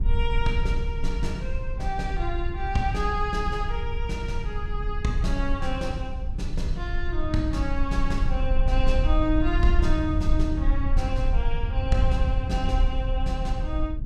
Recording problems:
low-frequency rumble; below 60 Hz, SNR -1 dB

